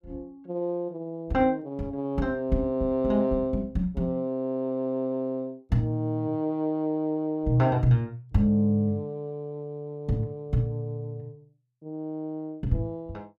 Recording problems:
none

